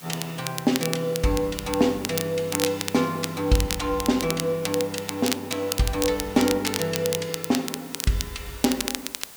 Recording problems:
background hiss; slope -1 dB per octave, SNR 18 dB
crackle; vinyl, SNR 6 dB

